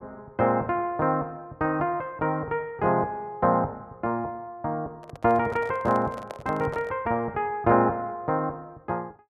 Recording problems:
handling noise; from 5 to 7 s; peak -7 dB vs average level

